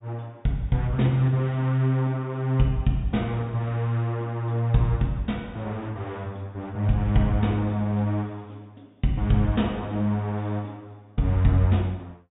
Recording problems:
low-pass filter; nothing above 4 kHz

